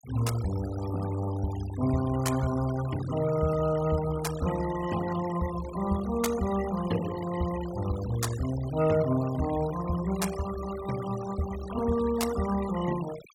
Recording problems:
noise reduction artefacts; signal-to-artefact ratio 13 dB

